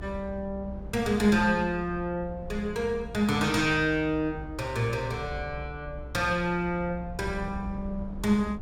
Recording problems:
low-frequency rumble; below 98 Hz, strongest tone 62 Hz, SNR 13 dB

